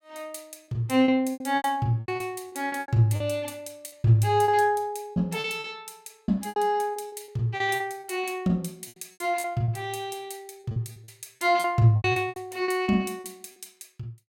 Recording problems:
lost packets; 14% of the sound replaced, filled with repeated pitch periods

